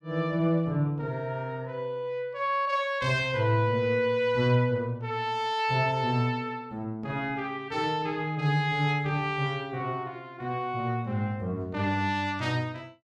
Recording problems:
none

